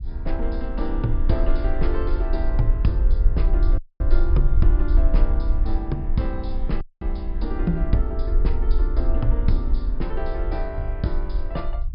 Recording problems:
treble missing; nothing above 5.5 kHz
low-frequency rumble; below 48 Hz, strongest tone 22 Hz, SNR -4 dB
dropout; at 4 s and at 7 s

